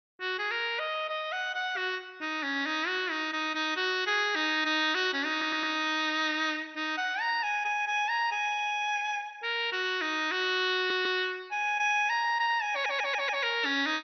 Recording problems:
lossy compression; MP2, log-spectral distance 4 dB, nothing above 5.5 kHz
audio stuttering; at 5.5 s, at 11 s and at 13 s

